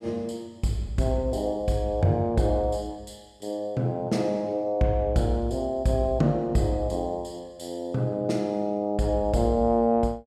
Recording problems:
none

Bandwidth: 14 kHz